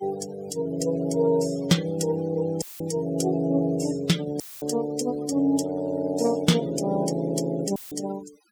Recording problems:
noise reduction artefacts; signal-to-artefact ratio 17 dB
dropout; at 2.5 s, at 4.5 s and at 8 s; filled with static

